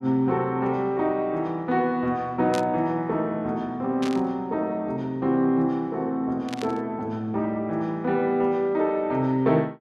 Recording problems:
burst of static; at 2.5 s, at 4 s and at 6.5 s; peak -5 dB vs average level

